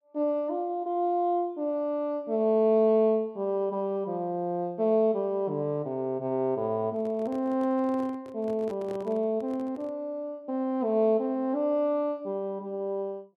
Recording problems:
handling noise; from 7 to 10 s; peak -10 dB vs average level

